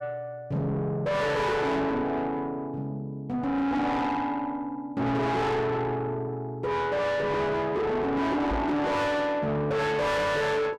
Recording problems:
distorted audio; soft clipping, signal-to-distortion ratio 5 dB
knock on the microphone; at 8.5 s; peak +3 dB vs average level

